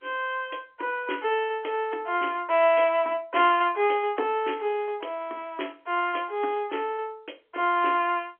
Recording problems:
telephone audio; 260 Hz to 3.3 kHz, G.711

